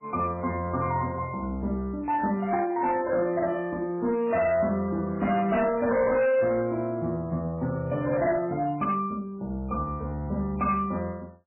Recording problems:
lossy codec; MP3, log-spectral distance 2 dB, nothing above 2.7 kHz
distorted audio; hard clipping, signal-to-distortion ratio 12 dB

